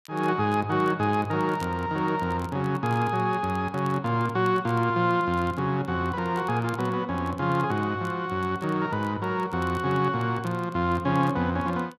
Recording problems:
crackling; vinyl, SNR 28 dB

